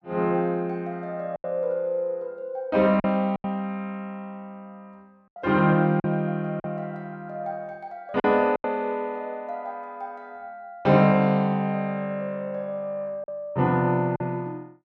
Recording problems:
lost packets; 4% of the sound replaced, filled with silence

